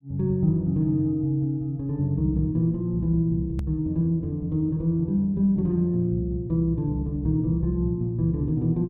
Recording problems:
hard cut with a click; at 3.5 s

